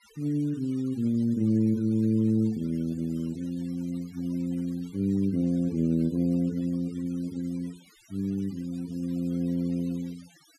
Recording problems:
noise reduction artefacts; signal-to-artefact ratio 26 dB

